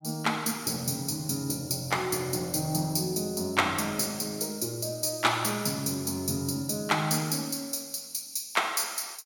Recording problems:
none

